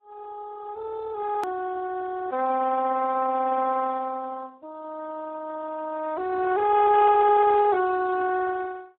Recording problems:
phone line; 280 Hz to 2 kHz, Speex
hard cut with a click; at 1.5 s

